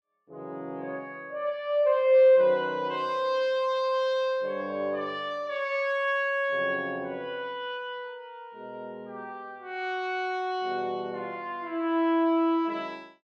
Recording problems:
none

